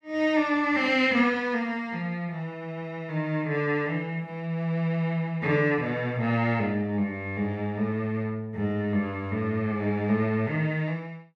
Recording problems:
none

